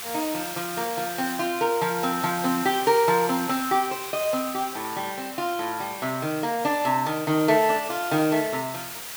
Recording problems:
background hiss; slope +1 dB per octave, SNR 9 dB

